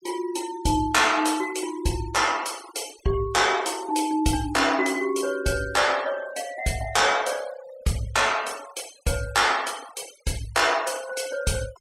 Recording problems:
denoising artefacts; signal-to-artefact ratio 18 dB

